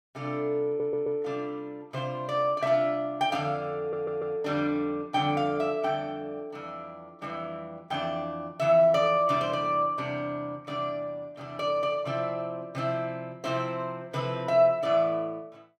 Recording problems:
audio stuttering; at 0.5 s and at 4 s

